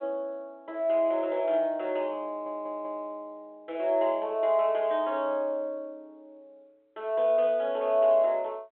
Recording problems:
phone line; 340 Hz to 3.5 kHz, G.726
stutter; at 2.5 s

